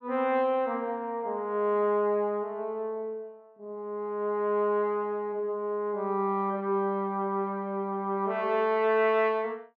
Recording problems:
none

